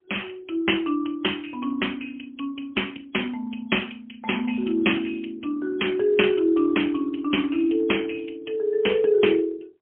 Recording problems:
telephone audio; 240 Hz to 3.3 kHz, AMR-NB, then MP3

